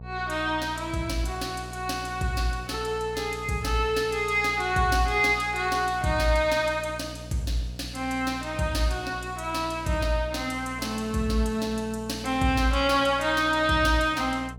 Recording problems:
hum; 60 Hz, harmonics up to 900 Hz, SNR 15 dB

